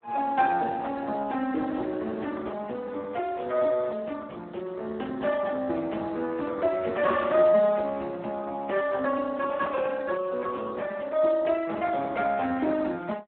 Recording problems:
phone line; 220 Hz to 2.8 kHz, Speex

